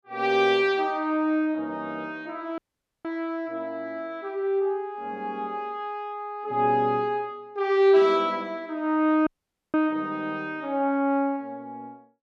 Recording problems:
audio cutting out; at 2.5 s and at 9.5 s

